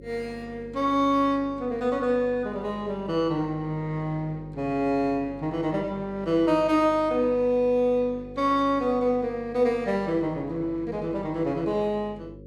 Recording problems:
electrical hum; 50 Hz, harmonics up to 550 Hz, SNR 19 dB

